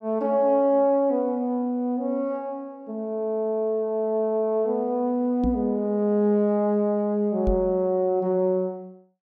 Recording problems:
knock on the microphone; at 5.5 s and at 7.5 s; peak -1 dB vs average level

